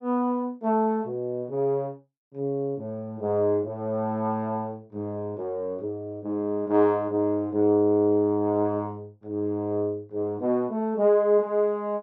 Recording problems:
none

